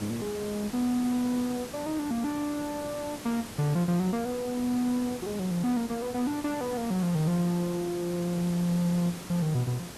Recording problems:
background hiss; slope -4 dB per octave, SNR 12 dB

